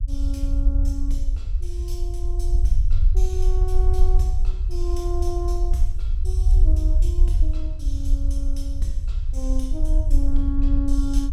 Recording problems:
rumble; below 54 Hz, SNR -10 dB

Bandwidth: 16.5 kHz